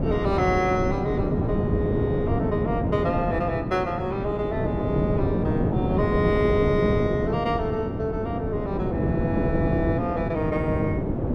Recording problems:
wind noise; below 360 Hz, SNR -1 dB

